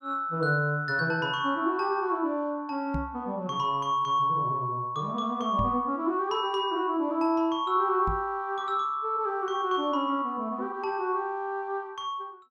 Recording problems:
knock on the microphone; at 3 s, at 5.5 s and at 8 s; peak -1 dB vs average level

